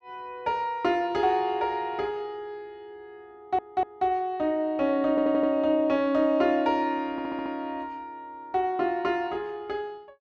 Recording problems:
audio stuttering; at 3.5 s, at 5 s and at 7 s

